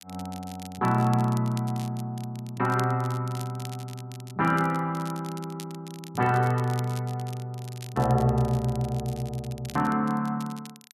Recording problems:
crackle; vinyl, SNR 19 dB

